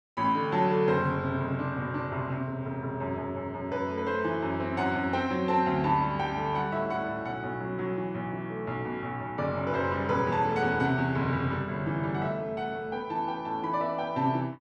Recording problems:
none

